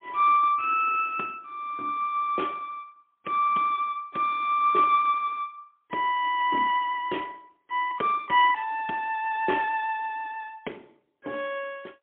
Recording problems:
telephone audio; 240 Hz to 3.5 kHz, AMR-NB, then MP3

